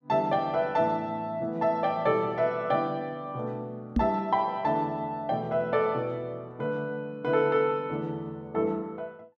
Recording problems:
microphone bump; at 4 s; peak +6 dB vs average level

